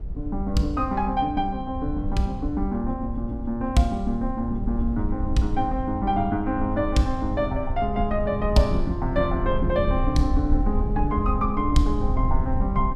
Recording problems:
low-frequency rumble; below 76 Hz, SNR 4 dB

